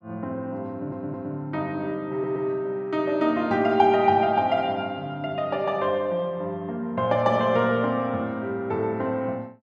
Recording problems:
audio stuttering; at 0.5 s and at 2 s

